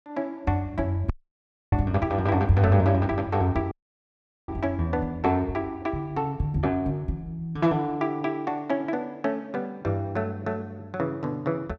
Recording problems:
dropout; at 1 s for 0.5 s and at 3.5 s for 1 s

